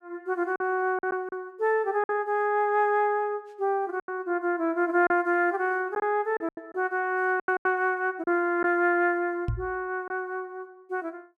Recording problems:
lost packets; 6% of the sound replaced, filled with silence
microphone bump; at 9.5 s; peak +1 dB vs average level

